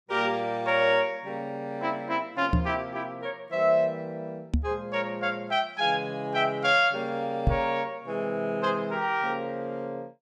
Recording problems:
microphone thump; at 2.5 s, at 4.5 s and at 7.5 s; peak +7 dB vs average level

